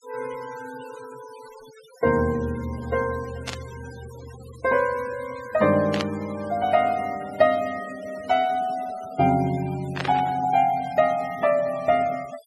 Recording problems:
noise reduction artefacts; signal-to-artefact ratio 20 dB
static burst; at 3.5 s, at 6 s and at 10 s; peak -1 dB vs average level

